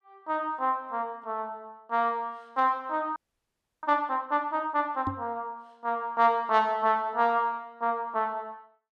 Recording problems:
audio freezing; at 3 s for 0.5 s
microphone bump; at 5 s; peak -1 dB vs average level

